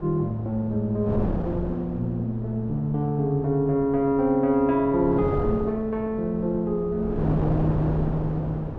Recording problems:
wind noise; below 440 Hz, SNR 8 dB

